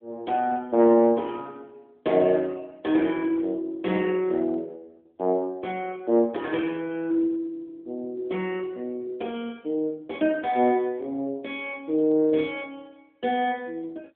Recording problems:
telephone audio; 240 Hz to 3.4 kHz, AMR-NB

